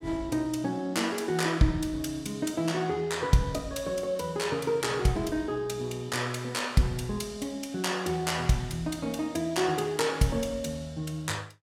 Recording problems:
none

